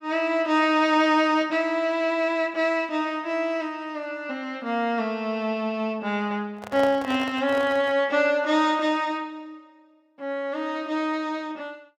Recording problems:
handling noise; from 6.5 to 8 s; peak -5 dB vs average level

